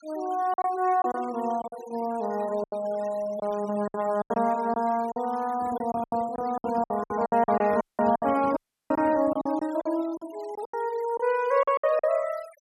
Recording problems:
denoising artefacts; signal-to-artefact ratio 21 dB
packet loss; 12% of the sound replaced, filled with silence
handling noise; from 5.5 to 9.5 s; peak -7 dB vs average level
dropout; at 8 s and at 8.5 s

